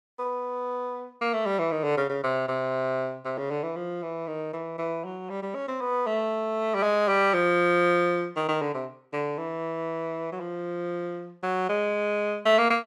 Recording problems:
none

